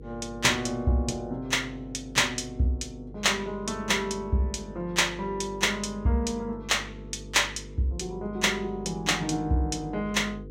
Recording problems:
hum; 50 Hz, harmonics up to 500 Hz, SNR 16 dB

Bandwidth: 16 kHz